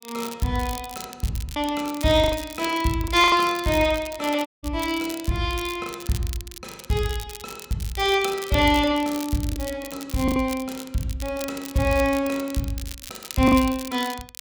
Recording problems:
crackle; vinyl, SNR 14 dB
packet loss; 6% of the sound replaced, filled with the last packet
dropout; at 4.5 s

